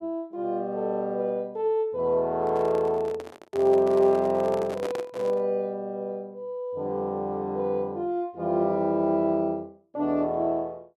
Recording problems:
handling noise; from 2.5 to 5.5 s; peak -3 dB vs average level

